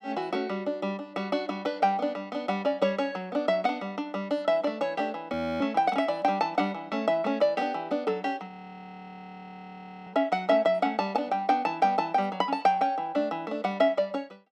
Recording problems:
frozen audio; at 5.5 s and at 8.5 s for 1.5 s

